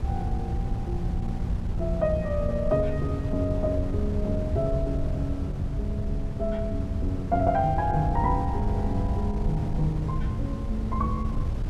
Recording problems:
wind noise; below 110 Hz, SNR 1 dB

